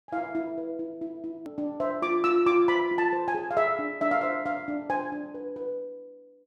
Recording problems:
click at an edit; at 1.5 s

